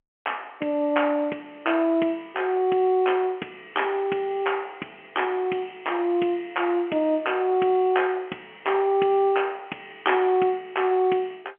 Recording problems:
telephone audio; 240 Hz to 3.2 kHz, G.711

